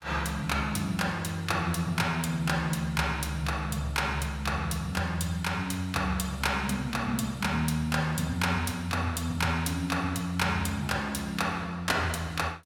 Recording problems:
none

